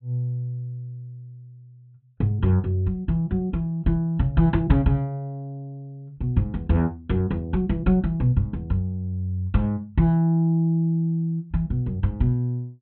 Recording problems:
treble cut off; nothing above 4 kHz

